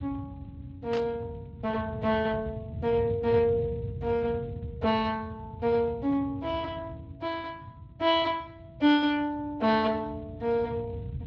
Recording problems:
lossy codec; Speex, log-spectral distance 2 dB
rumble; below 150 Hz, SNR 12 dB
static burst; at 1 s; peak -8 dB vs average level

